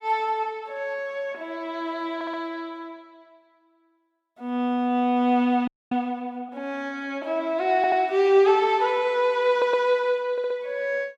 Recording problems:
audio stuttering; 4 times, first at 2 s
frozen audio; at 5.5 s

